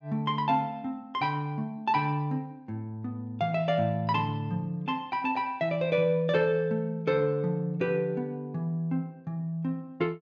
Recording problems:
treble cut off; nothing above 8 kHz

